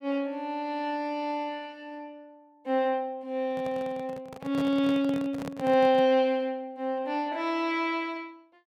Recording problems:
handling noise; from 3.5 to 6 s; peak -5 dB vs average level

